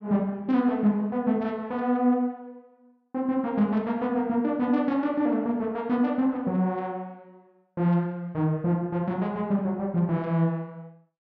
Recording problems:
none

